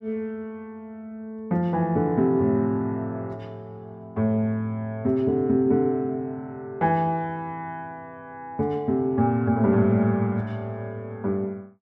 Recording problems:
none

